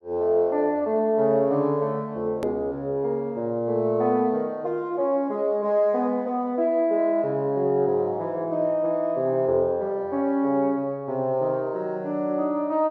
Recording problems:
edit click; at 2.5 s

